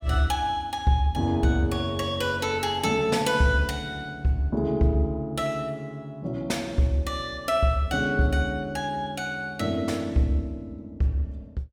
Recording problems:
none

